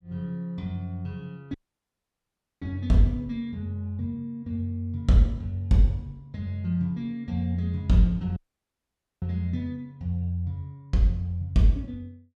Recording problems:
audio cutting out; at 1.5 s for 1 s and at 8.5 s for 1 s

